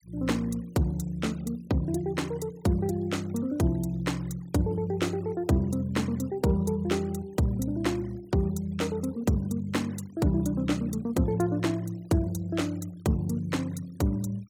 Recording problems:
noise reduction artefacts; signal-to-artefact ratio 25 dB

